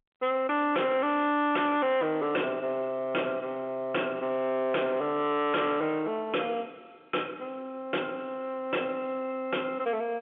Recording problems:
telephone audio; 190 Hz to 3.4 kHz, G.711
distorted audio; hard clipping, uneven, signal-to-distortion ratio 6 dB

